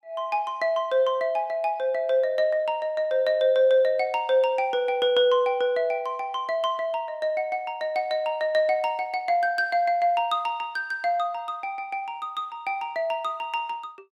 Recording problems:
none

